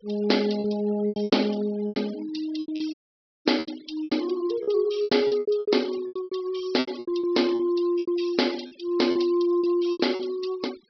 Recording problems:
treble missing; nothing above 5.5 kHz
denoising artefacts; signal-to-artefact ratio 18 dB
lost packets; 16% of the sound replaced, filled with repeated pitch periods
audio cutting out; at 3 s for 0.5 s

